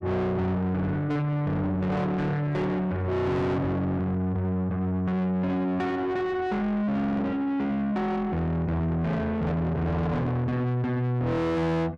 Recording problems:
distorted audio; soft clipping, signal-to-distortion ratio 7 dB

